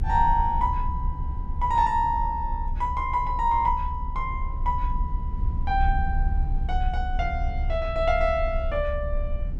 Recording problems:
low-frequency rumble; below 66 Hz, strongest tone 30 Hz, SNR 4 dB

